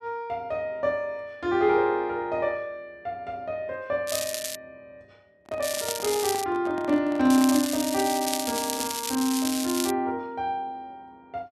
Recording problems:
crackle; at 4 s, at 5.5 s and from 7.5 to 10 s; loose cable, SNR 4 dB
microphone handling noise; from 5.5 to 8 s; peak -7 dB vs average level

